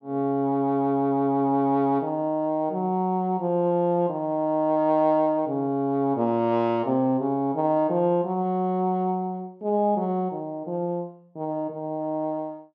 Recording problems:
none

